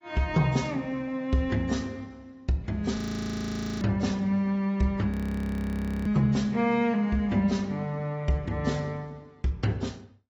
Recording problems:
lossy codec; AAC, log-spectral distance 2 dB
audio freezing; at 3 s for 1 s and at 5 s for 1 s

